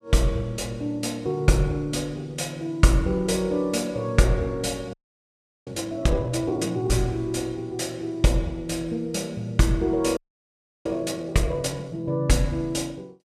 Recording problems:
frozen audio; at 5 s for 0.5 s and at 10 s for 0.5 s

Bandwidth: 14 kHz